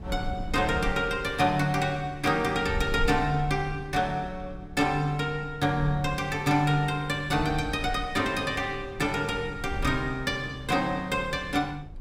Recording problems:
wind on the microphone; below 84 Hz, SNR 13 dB

